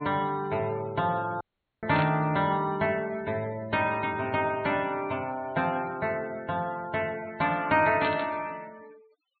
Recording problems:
treble cut off; nothing above 4.3 kHz
noise reduction artefacts; signal-to-artefact ratio 24 dB
audio cutting out; at 1.5 s
static burst; at 2 s and at 8 s; peak -3 dB vs average level

